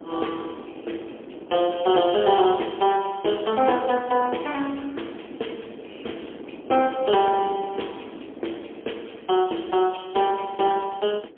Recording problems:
phone line; 240 Hz to 3.4 kHz, AMR-NB, then MP3
wind on the microphone; below 500 Hz, SNR 18 dB

